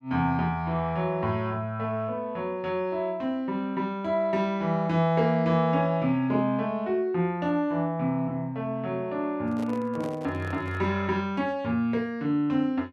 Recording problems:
handling noise; from 9.5 to 11 s; peak -7 dB vs average level

